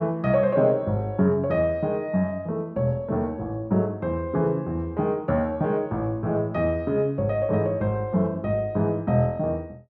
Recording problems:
none

